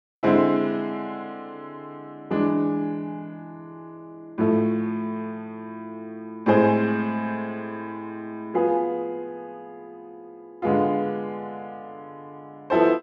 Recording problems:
none

